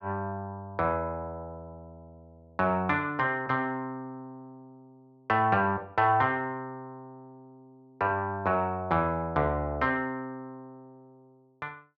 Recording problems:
none

